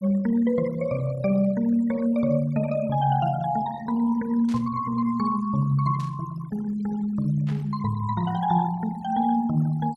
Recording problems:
noise reduction artefacts; signal-to-artefact ratio 20 dB
burst of static; at 4.5 s, at 6 s and at 7.5 s; peak -14 dB vs average level

